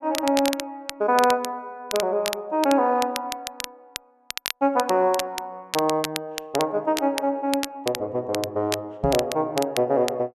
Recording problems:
crackling; vinyl, SNR 9 dB
microphone thump; at 9 s; peak +1 dB vs average level

